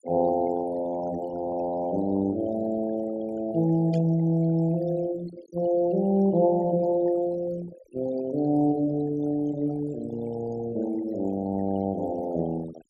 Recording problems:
noise reduction artefacts; signal-to-artefact ratio 18 dB
burst of static; at 4 s; peak -16 dB vs average level

